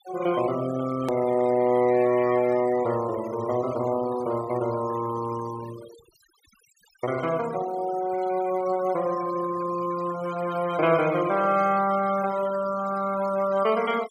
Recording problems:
denoising artefacts; signal-to-artefact ratio 17 dB
click at an edit; at 1 s

